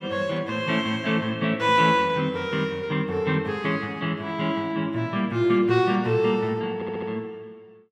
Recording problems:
stutter; at 7 s

